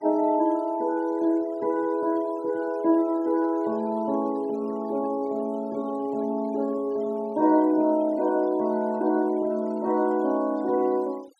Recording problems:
noise reduction artefacts; signal-to-artefact ratio 26 dB

